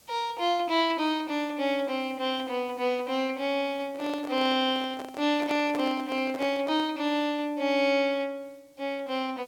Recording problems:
background hiss; slope -1 dB per octave, SNR 29 dB
microphone handling noise; from 4 to 7 s; peak -4 dB vs average level

